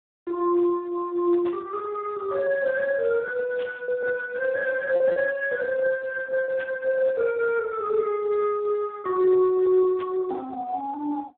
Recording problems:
telephone audio; 300 Hz to 2.8 kHz, Speex
lost packets; 1.8% of the sound replaced, filled with repeated pitch periods
burst of static; 4 times, first at 1.5 s; peak -13 dB vs average level

